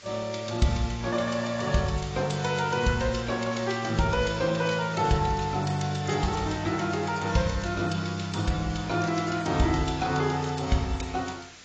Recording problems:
lossy codec; AAC, log-spectral distance 8 dB, nothing above 7.6 kHz
hiss; SNR 19 dB

